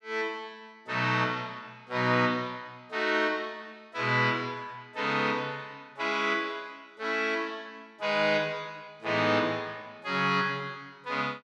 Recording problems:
none

